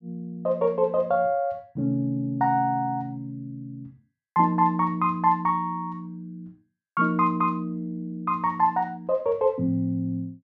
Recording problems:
none

